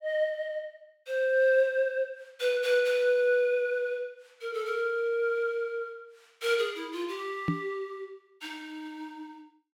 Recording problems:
knock on the microphone; at 7.5 s; peak +4 dB vs average level

